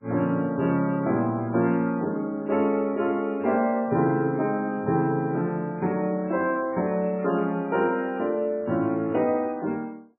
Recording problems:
lossy codec; MP3, log-spectral distance 2 dB, nothing above 2.5 kHz

